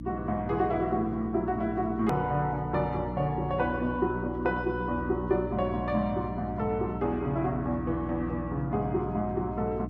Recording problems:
lossy compression; Vorbis, log-spectral distance 2 dB, nothing above 13.1 kHz
hum; 60 Hz, harmonics up to 300 Hz, SNR 8 dB
click at an edit; at 2 s

